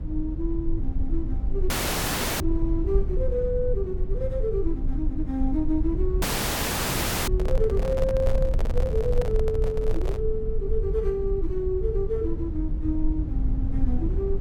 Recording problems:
low-frequency rumble; below 62 Hz, strongest tone 20 Hz, SNR 0 dB
dropout; at 1.5 s for 0.5 s and at 6 s for 1 s
microphone handling noise; from 6 to 10 s; peak +1 dB vs average level

